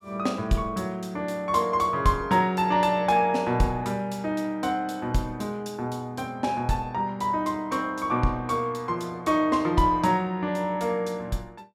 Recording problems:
none

